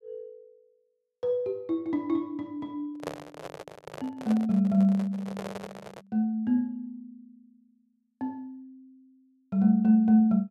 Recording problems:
handling noise; from 3 to 6 s; peak -3 dB vs average level

